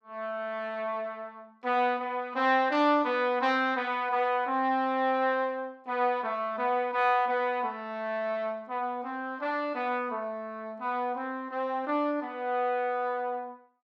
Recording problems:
none

